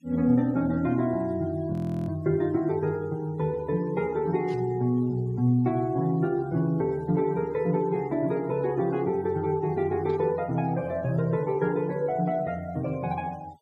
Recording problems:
denoising artefacts; signal-to-artefact ratio 27 dB
audio freezing; at 1.5 s
static burst; at 4.5 s and at 10 s; peak -19 dB vs average level

